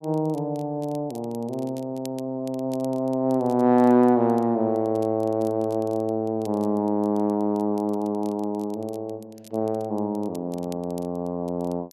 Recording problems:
crackle; vinyl, SNR 27 dB

